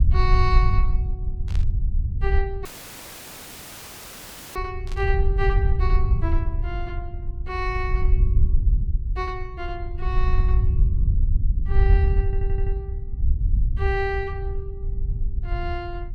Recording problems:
low-frequency rumble; below 70 Hz, SNR -6 dB
static burst; at 1.5 s and at 5 s; peak -7 dB vs average level
audio cutting out; at 2.5 s for 2 s; filled with static
audio stuttering; at 12 s

